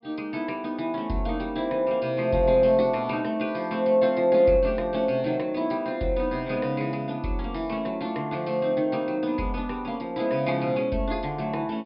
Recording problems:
low-pass filter; nothing above 5.5 kHz

